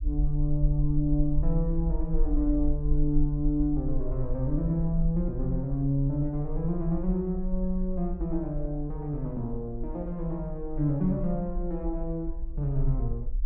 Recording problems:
low-frequency rumble; below 44 Hz, strongest tone 22 Hz, SNR 5 dB

